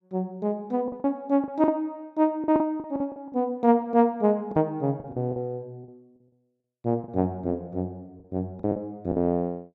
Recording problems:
lost packets; 9% of the sound replaced, filled with the last packet

